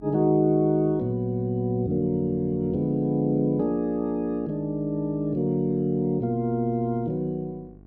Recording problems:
hum; 50 Hz, harmonics up to 750 Hz, SNR 24 dB

